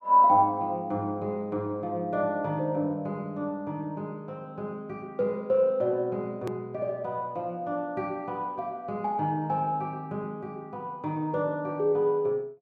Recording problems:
edit click; at 6.5 s

